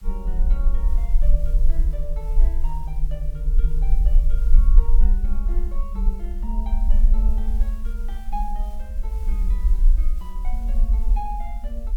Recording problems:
background hiss; slope 0 dB per octave, SNR 17 dB
rumble; below 42 Hz, strongest tone 20 Hz, SNR -14 dB

